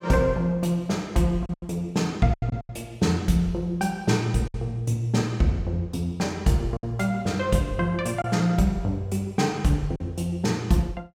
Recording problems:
packet loss; 4% of the sound replaced, filled with silence

